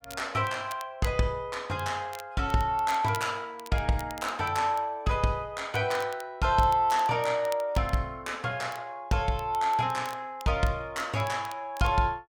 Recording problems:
crackle; vinyl, SNR 21 dB

